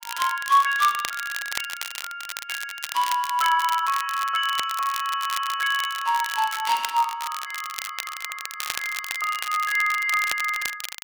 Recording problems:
crackle; vinyl, SNR 9 dB
stutter; at 5 s and at 7.5 s

